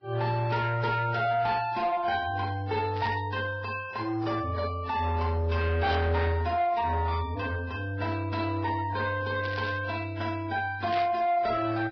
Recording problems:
lossy compression; AAC, then Vorbis, log-spectral distance 3 dB, nothing above 5.2 kHz
distorted audio; soft clipping, signal-to-distortion ratio 11 dB
burst of static; 4 times, first at 3 s; peak -6 dB vs average level

